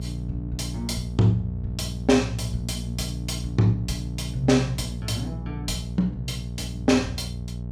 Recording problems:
electrical hum; 60 Hz, harmonics up to 660 Hz, SNR 6 dB

